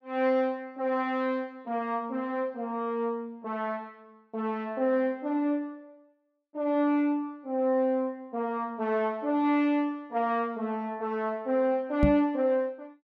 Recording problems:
microphone bump; at 12 s; peak +7 dB vs average level

